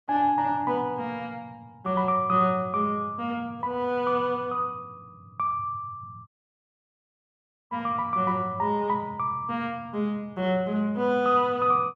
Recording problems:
dropout; at 6.5 s for 1.5 s

